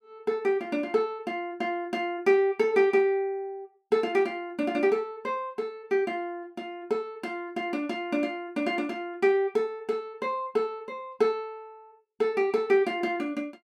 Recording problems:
none

